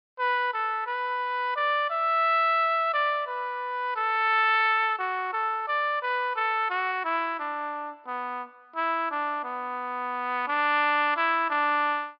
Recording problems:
treble missing; nothing above 5.5 kHz

